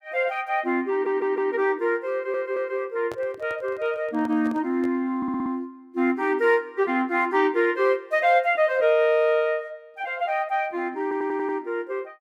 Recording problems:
stutter; 4 times, first at 1 s
handling noise; from 3 to 5 s; peak -9 dB vs average level

